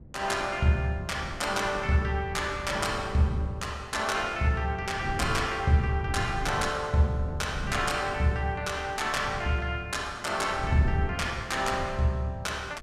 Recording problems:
wind noise; below 180 Hz, SNR 11 dB

